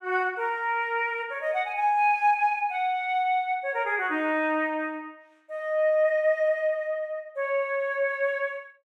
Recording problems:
none

